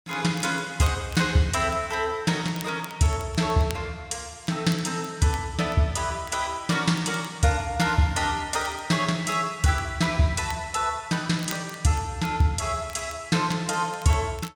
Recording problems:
crackle; vinyl, SNR 22 dB

